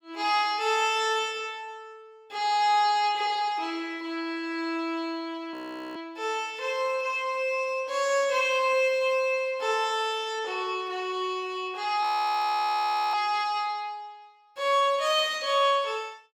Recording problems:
frozen audio; at 5.5 s and at 12 s for 1 s

